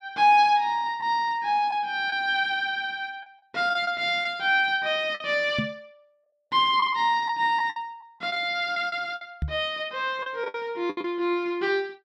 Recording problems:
packet loss; 6% of the sound replaced, filled with the last packet
microphone thump; at 5.5 s and at 9.5 s; peak 0 dB vs average level

